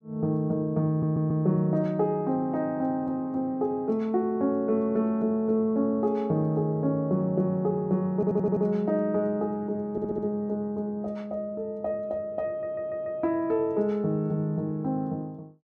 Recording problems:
audio stuttering; 4 times, first at 1 s

